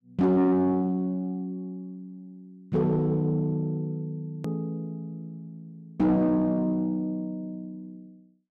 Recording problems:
distortion; soft clipping, signal-to-distortion ratio 12 dB
hard cut with a click; at 4.5 s

